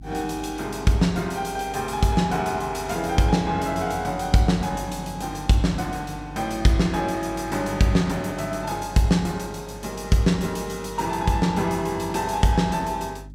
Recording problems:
electrical hum; 50 Hz, harmonics up to 300 Hz, SNR 18 dB

